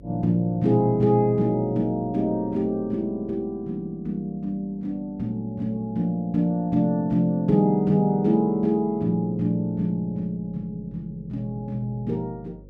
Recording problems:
electrical hum; 50 Hz, harmonics up to 550 Hz, SNR 25 dB

